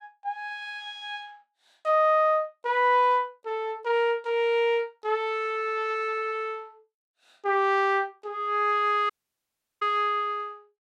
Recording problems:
dropout; at 9 s for 0.5 s

